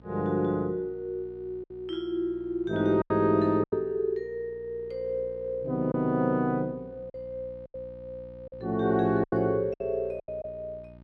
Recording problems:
hum; 60 Hz, harmonics up to 960 Hz, SNR 22 dB
packet loss; 6% of the sound replaced, filled with silence

